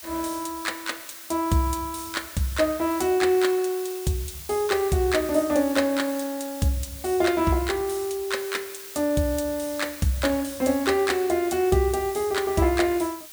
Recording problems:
hiss; slope +3 dB per octave, SNR 13 dB

